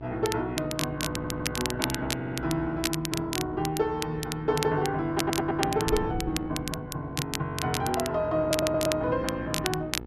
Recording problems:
hum; 60 Hz, harmonics up to 1.4 kHz, SNR 12 dB
wind on the microphone; below 210 Hz, SNR 17 dB
crackling; vinyl, SNR 6 dB
audio stuttering; 4 times, first at 1 s

